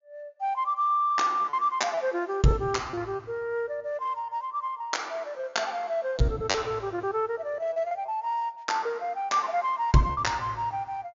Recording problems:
treble cut off; nothing above 7.2 kHz
packet loss; 11% of the sound replaced, filled with repeated pitch periods

